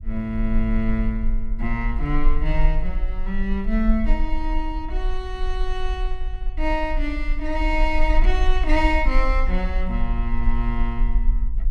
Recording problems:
rumble; below 38 Hz, strongest tone 18 Hz, SNR 0 dB

